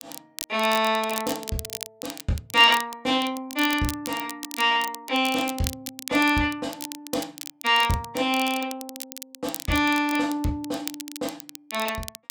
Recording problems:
crackling; vinyl, SNR 12 dB

